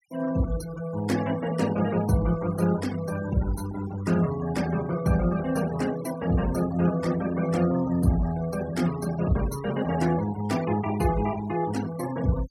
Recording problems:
denoising artefacts; signal-to-artefact ratio 15 dB

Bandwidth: 16 kHz